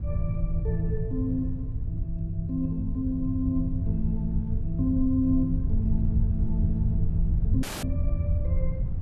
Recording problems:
wind noise; below 88 Hz, SNR 1 dB
audio cutting out; at 7.5 s

